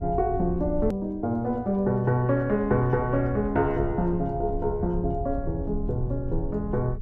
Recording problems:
rumble; below 88 Hz, SNR 10 dB
edit click; at 1 s

